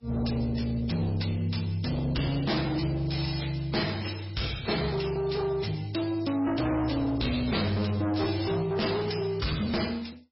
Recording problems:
codec artefacts; AAC, then MP3, log-spectral distance 7 dB, nothing above 5.5 kHz
distorted audio; soft clipping, signal-to-distortion ratio 6 dB

